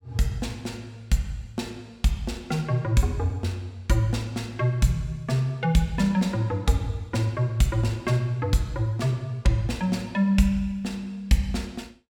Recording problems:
none

